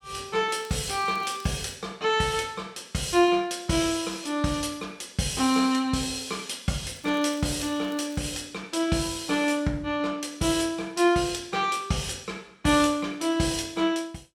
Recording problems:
crackle; until 2 s and from 7 to 8 s; loose cable, SNR 25 dB

